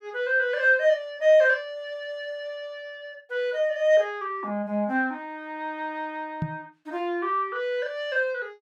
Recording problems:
microphone bump; at 6.5 s; peak 0 dB vs average level

